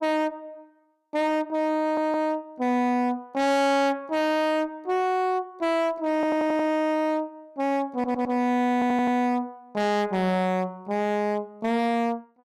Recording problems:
distortion; hard clipping, uneven, signal-to-distortion ratio 6 dB
stutter; 4 times, first at 2 s

